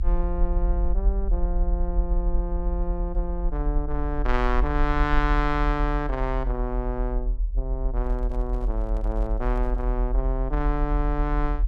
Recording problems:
rumble; below 48 Hz, strongest tone 40 Hz, SNR -2 dB
handling noise; from 8 to 10 s; peak -12 dB vs average level

